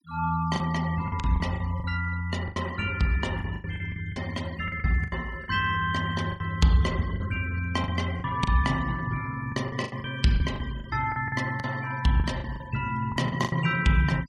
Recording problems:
denoising artefacts; signal-to-artefact ratio 19 dB
lost packets; 12% of the sound replaced, filled with the last packet

